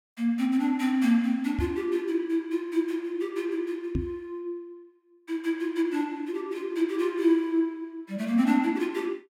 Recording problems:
microphone thump; at 1.5 s and at 4 s; peak +2 dB vs average level

